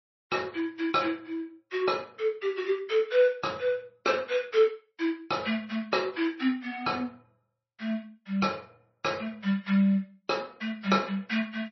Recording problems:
lossy codec; MP3, log-spectral distance 3 dB, nothing above 5.8 kHz

